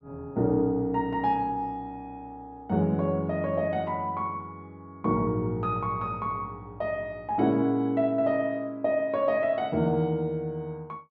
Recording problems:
none

